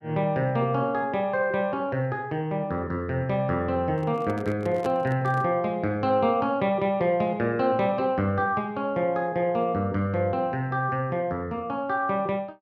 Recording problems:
microphone handling noise; from 4 to 5.5 s; peak -3 dB vs average level

